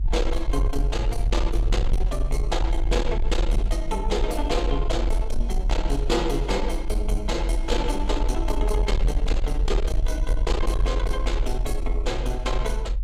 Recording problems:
distorted audio; soft clipping, signal-to-distortion ratio 11 dB
low-frequency rumble; below 46 Hz, SNR -1 dB

